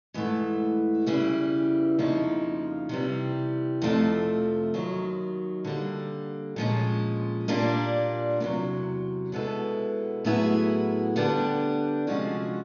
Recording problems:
low-pass filter; nothing above 6.6 kHz

